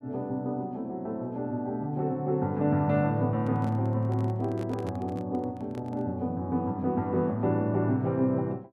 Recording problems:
microphone handling noise; from 3.5 to 6 s; peak -7 dB vs average level

